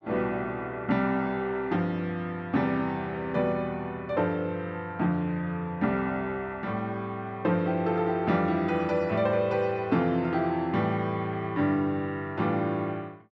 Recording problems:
none

